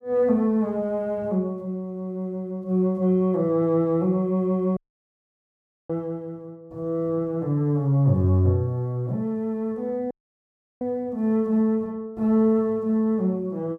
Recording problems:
dropout; at 5 s for 1 s and at 10 s for 0.5 s

